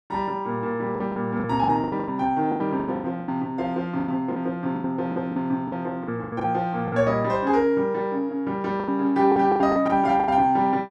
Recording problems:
packet loss; 14% of the sound replaced, filled with the last packet

